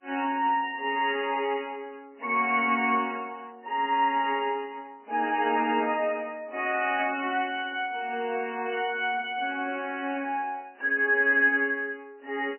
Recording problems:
codec artefacts; MP3, then AAC, log-spectral distance 3 dB, nothing above 3 kHz

